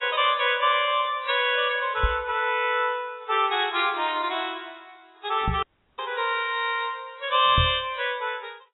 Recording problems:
lossy compression; AAC, log-spectral distance 6 dB, nothing above 3.9 kHz
microphone bump; at 2 s, at 5.5 s and at 7.5 s; peak +2 dB vs average level
dropout; at 5.5 s

